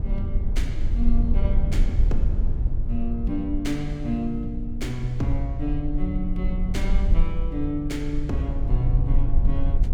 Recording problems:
rumble; below 54 Hz, strongest tone 18 Hz, SNR -3 dB

